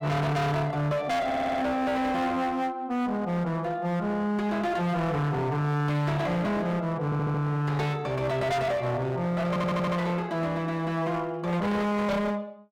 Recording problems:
distorted audio; hard clipping, uneven, signal-to-distortion ratio 6 dB
stutter; at 1.5 s, at 7 s and at 9.5 s

